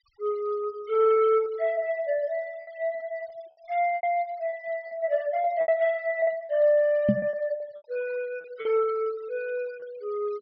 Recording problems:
low-pass filter; nothing above 5.5 kHz
denoising artefacts; signal-to-artefact ratio 25 dB
lost packets; 7% of the sound replaced, filled with repeated pitch periods
knock on the microphone; at 7 s; peak +7 dB vs average level

